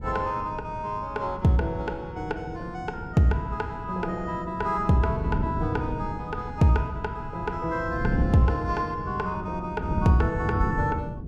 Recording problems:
wind noise; below 210 Hz, SNR 7 dB

